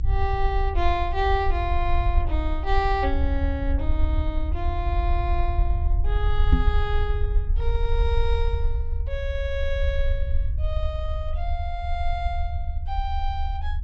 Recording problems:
treble missing; nothing above 7.9 kHz
rumble; below 70 Hz, SNR -3 dB
knock on the microphone; at 6.5 s; peak +8 dB vs average level

